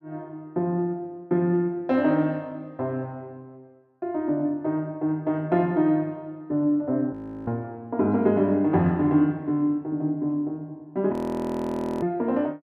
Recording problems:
frozen audio; at 7 s and at 11 s for 1 s

